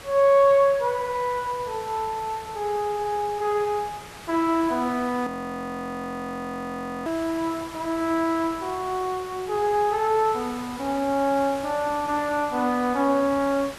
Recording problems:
hiss; slope -3 dB per octave, SNR 16 dB
frozen audio; at 5.5 s for 2 s

